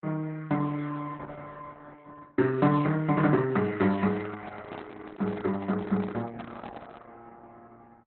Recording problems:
lossy compression; Opus, log-spectral distance 4 dB, nothing above 4 kHz
microphone handling noise; from 4 to 7 s; peak -5 dB vs average level

